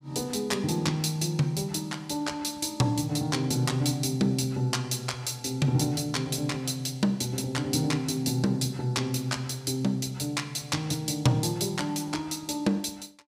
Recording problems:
none

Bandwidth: 15.5 kHz